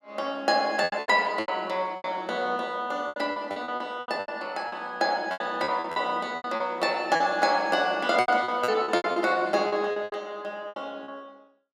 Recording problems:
lost packets; 15% of the sound replaced, filled with repeated pitch periods

